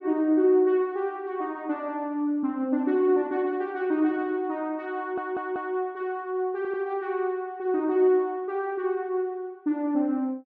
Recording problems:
audio stuttering; at 5 s and at 6.5 s

